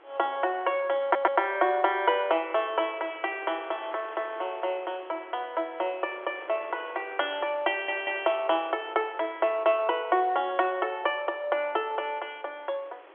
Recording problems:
telephone audio; 280 Hz to 3.4 kHz, G.711
wind on the microphone; below 1.8 kHz, SNR 21 dB
audio stuttering; at 1 s and at 7.5 s

